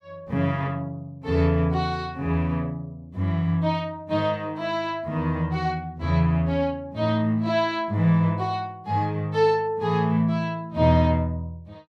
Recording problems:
none

